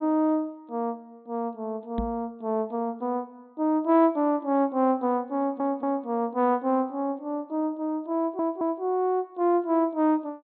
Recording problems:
treble missing; nothing above 4.3 kHz
microphone thump; at 2 s; peak -1 dB vs average level
stutter; at 5.5 s and at 8 s

